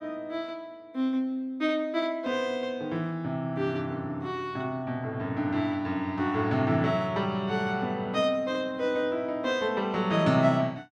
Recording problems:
none

